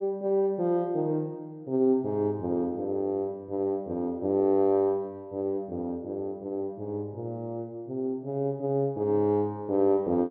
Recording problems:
none

